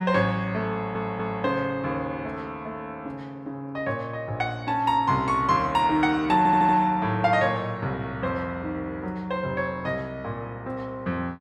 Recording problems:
stutter; at 0.5 s and at 6.5 s

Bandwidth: 12.5 kHz